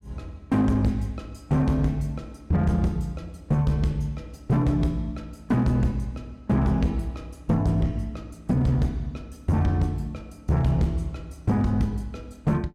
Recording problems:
distorted audio; hard clipping, uneven, signal-to-distortion ratio 10 dB

